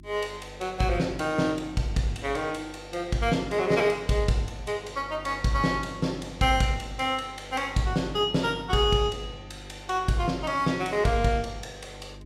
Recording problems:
hum; 50 Hz, harmonics up to 350 Hz, SNR 20 dB

